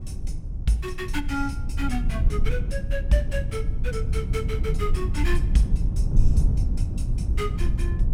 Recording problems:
rumble; below 80 Hz, SNR -3 dB

